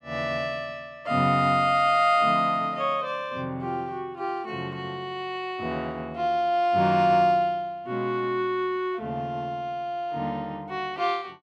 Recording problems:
none

